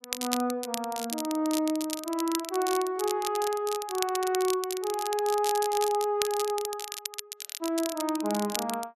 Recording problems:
crackle; vinyl, SNR 7 dB

